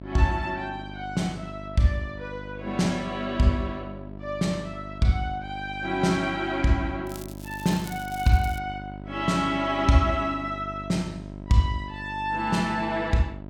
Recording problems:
hum; 50 Hz, harmonics up to 1.1 kHz, SNR 13 dB
crackling; from 7 to 8.5 s; loose cable, SNR 19 dB

